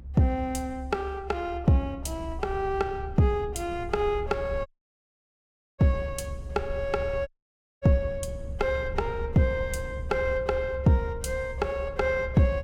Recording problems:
low-frequency rumble; below 74 Hz, strongest tone 68 Hz, SNR 10 dB
dropout; at 4.5 s for 1 s and at 7.5 s for 0.5 s

